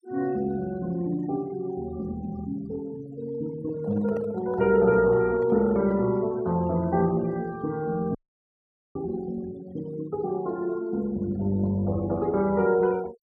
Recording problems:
denoising artefacts; signal-to-artefact ratio 23 dB
microphone handling noise; from 3.5 to 6 s; peak -9 dB vs average level
dropout; at 8 s for 1 s

